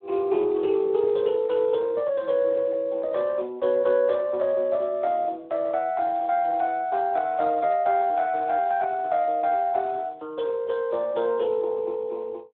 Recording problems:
phone line; 280 Hz to 3.6 kHz, Speex

